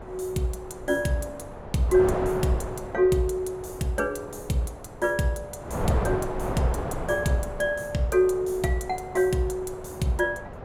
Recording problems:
wind noise; below 770 Hz, SNR 8 dB

